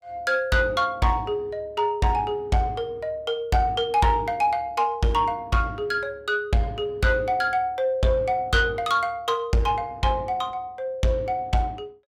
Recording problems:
distortion; soft clipping, signal-to-distortion ratio 12 dB

